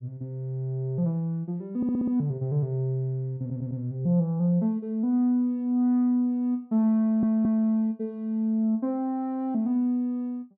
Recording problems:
stutter; at 2 s, at 3.5 s and at 7 s

